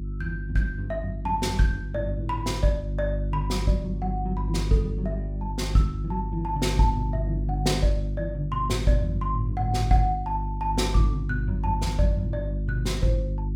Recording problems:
mains hum; 50 Hz, harmonics up to 350 Hz, SNR 3 dB

